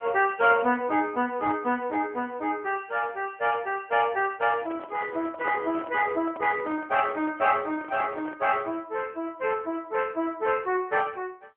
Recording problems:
telephone audio; 260 Hz to 3.2 kHz, AMR-NB
microphone handling noise; from 4.5 to 8.5 s; peak -3 dB vs average level

